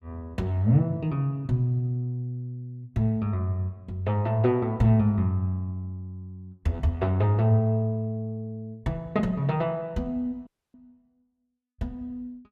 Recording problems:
audio cutting out; at 10 s

